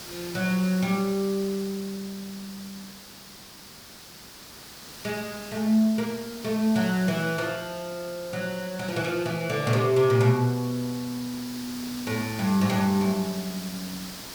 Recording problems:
background hiss; slope -1 dB per octave, SNR 13 dB

